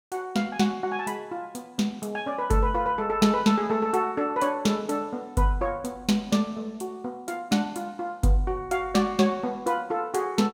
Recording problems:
none

